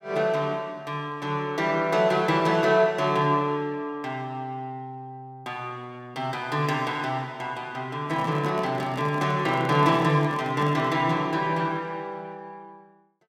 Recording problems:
microphone handling noise; from 8 to 11 s; peak -6 dB vs average level

